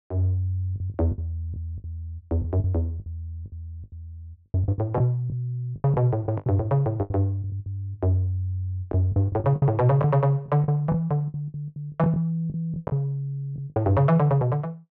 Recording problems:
lost packets; 12% of the sound replaced, filled with the last packet

